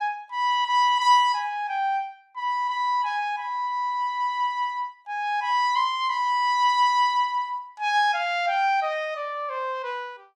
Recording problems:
none

